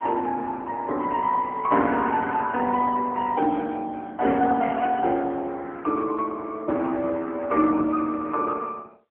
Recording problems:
phone line; 220 Hz to 3.4 kHz, AMR-NB

